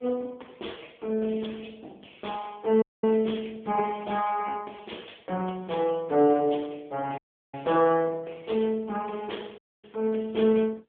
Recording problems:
telephone audio; 300 Hz to 3.4 kHz, AMR-NB
dropout; at 3 s, at 7 s and at 9.5 s

